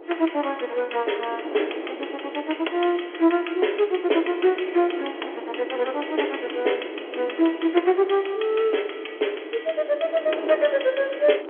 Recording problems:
telephone audio; 280 Hz to 3.4 kHz, G.711
wind on the microphone; below 560 Hz, SNR 12 dB

